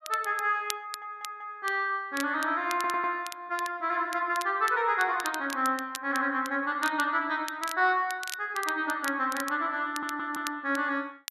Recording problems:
crackling; vinyl, SNR 14 dB
audio stuttering; at 1 s, at 2.5 s and at 10 s

